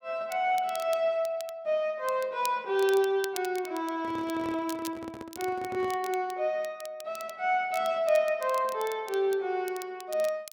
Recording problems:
crackle; vinyl, SNR 17 dB
microphone handling noise; from 4 to 6 s; peak -9 dB vs average level

